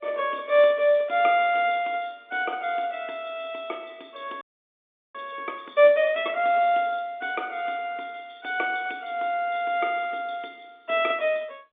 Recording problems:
telephone audio; 240 Hz to 3.6 kHz, G.711
frozen audio; at 4.5 s for 0.5 s

